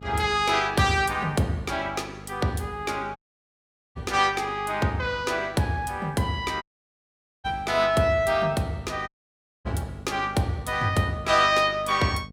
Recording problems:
electrical hum; 50 Hz, harmonics up to 700 Hz, SNR 19 dB
audio cutting out; at 3 s for 1 s, at 6.5 s for 1 s and at 9 s for 0.5 s

